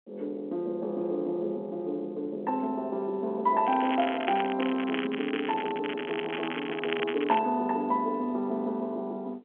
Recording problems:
telephone audio; 220 Hz to 3.6 kHz, G.711
crackle; at 3.5 s and from 4.5 to 7.5 s; loose cable, SNR 8 dB

